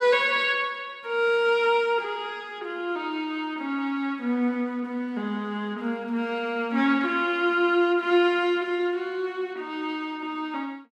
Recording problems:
none

